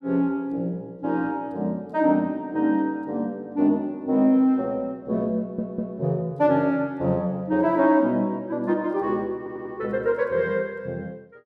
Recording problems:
audio stuttering; at 5.5 s and at 9.5 s

